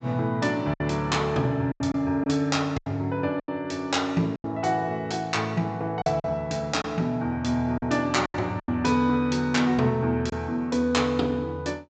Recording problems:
low-pass filter; nothing above 8 kHz
lost packets; 6% of the sound replaced, filled with silence

